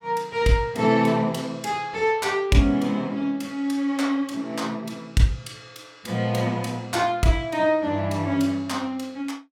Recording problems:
none

